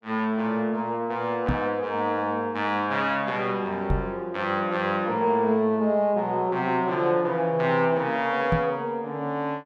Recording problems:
knock on the microphone; at 1.5 s, at 4 s and at 8.5 s; peak +4 dB vs average level

